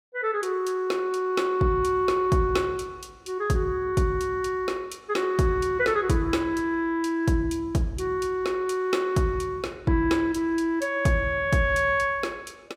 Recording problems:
none

